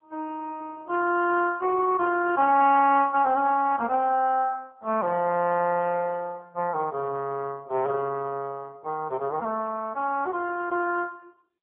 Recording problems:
telephone audio; 300 Hz to 3.1 kHz, AMR-NB

